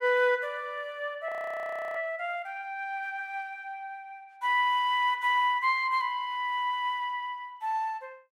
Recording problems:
audio freezing; at 1.5 s for 0.5 s

